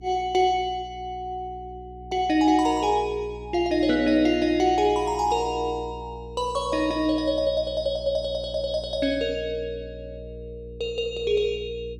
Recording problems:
hum; 60 Hz, harmonics up to 420 Hz, SNR 17 dB

